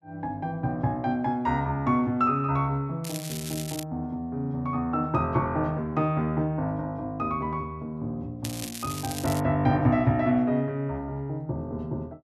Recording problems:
crackle; at 3 s and at 8.5 s; loose cable, SNR 10 dB

